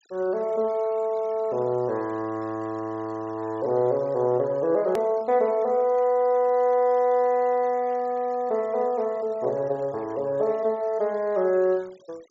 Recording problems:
low-pass filter; nothing above 8 kHz
noise reduction artefacts; signal-to-artefact ratio 28 dB
click at an edit; at 5 s

